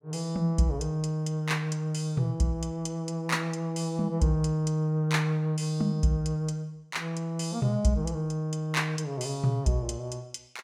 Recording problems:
none

